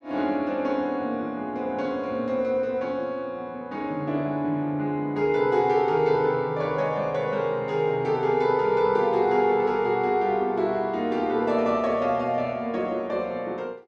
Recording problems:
none

